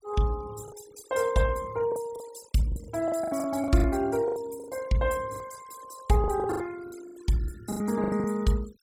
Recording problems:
noise reduction artefacts; signal-to-artefact ratio 17 dB
packet loss; 13% of the sound replaced, filled with the last packet

